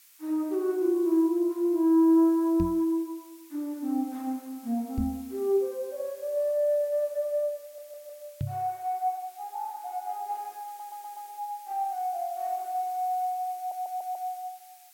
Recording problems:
hiss; SNR 23 dB
microphone bump; at 2.5 s, at 5 s and at 8.5 s; peak +1 dB vs average level
stutter; at 7.5 s, at 11 s and at 14 s

